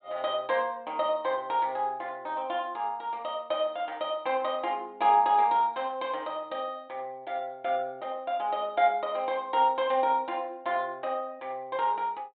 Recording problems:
low-pass filter; nothing above 4 kHz

